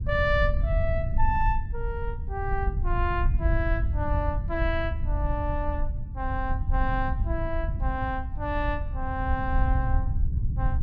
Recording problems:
low-frequency rumble; below 78 Hz, SNR -2 dB

